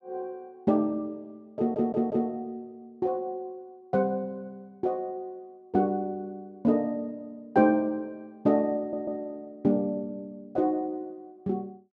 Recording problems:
audio stuttering; at 1.5 s and at 9 s

